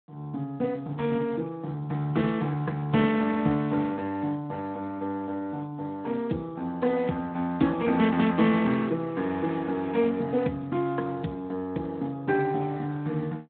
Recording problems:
phone line; 110 Hz to 3.7 kHz, Speex

